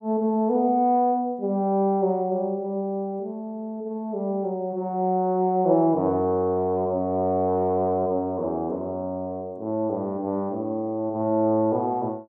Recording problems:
none

